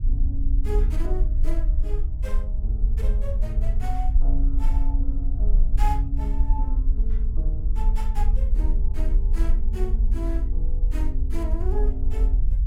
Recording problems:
rumble; below 48 Hz, SNR -11 dB

